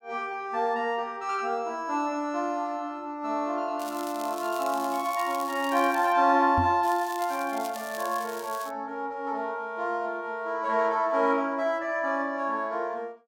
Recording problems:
crackling; from 4 to 6 s and from 7 to 8.5 s; loose cable, SNR 15 dB
microphone thump; at 6.5 s; peak +2 dB vs average level

